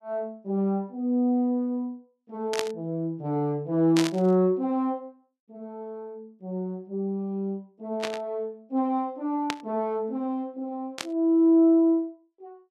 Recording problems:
burst of static; 5 times, first at 2.5 s; peak +1 dB vs average level

